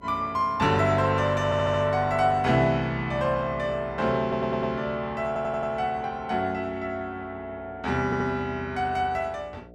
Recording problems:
electrical hum; 60 Hz, harmonics up to 720 Hz, SNR 24 dB
audio stuttering; 4 times, first at 1.5 s

